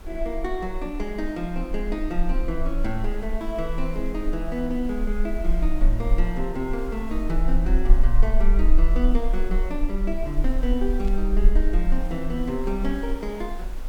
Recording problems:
hiss; slope -5 dB per octave, SNR 17 dB
low-frequency rumble; below 38 Hz, strongest tone 18 Hz, SNR -1 dB
burst of static; at 11 s; peak -14 dB vs average level

